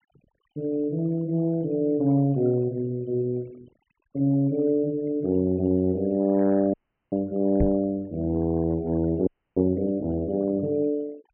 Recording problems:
treble missing; nothing above 3.1 kHz
noise reduction artefacts; signal-to-artefact ratio 25 dB
audio freezing; at 6.5 s and at 9.5 s
knock on the microphone; at 7.5 s; peak +2 dB vs average level

